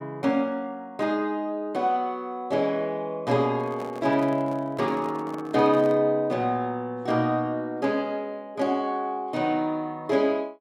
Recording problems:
microphone handling noise; from 3.5 to 6 s; peak -10 dB vs average level

